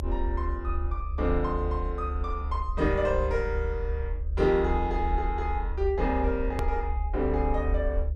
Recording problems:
mains hum; 60 Hz, harmonics up to 600 Hz, SNR 23 dB
low-frequency rumble; below 70 Hz, SNR 2 dB
edit click; at 6.5 s

